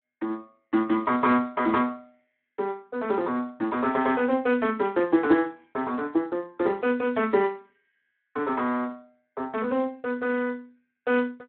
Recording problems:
telephone audio; 220 Hz to 3.2 kHz, Speex

